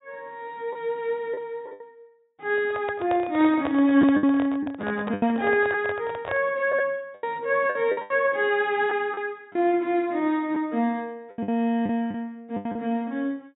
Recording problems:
treble cut off; nothing above 4 kHz
packet loss; 8% of the sound replaced, filled with the last packet
handling noise; from 2.5 to 6.5 s; peak -2 dB vs average level

